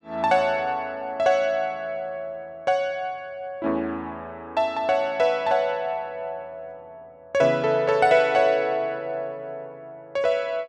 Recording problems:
none

